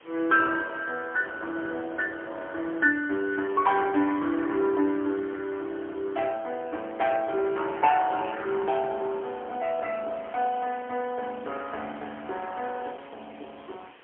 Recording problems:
telephone audio; 260 Hz to 3.2 kHz, AMR-NB, then MP3
background hiss; SNR 25 dB

